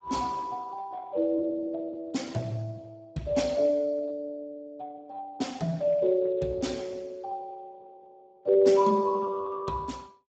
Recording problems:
lossy compression; Speex, log-spectral distance 3 dB, nothing above 7.6 kHz

